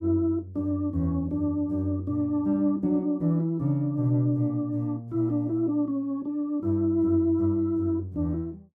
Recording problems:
none

